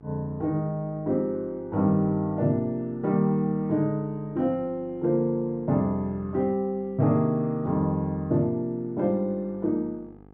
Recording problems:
electrical hum; 50 Hz, harmonics up to 1.3 kHz, SNR 25 dB

